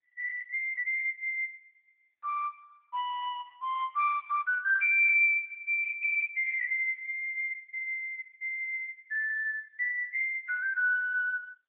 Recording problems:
telephone audio; 990 Hz to 2 kHz, AMR-NB

